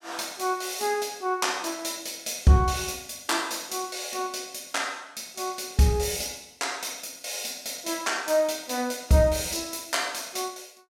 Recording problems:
none

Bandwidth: 16.5 kHz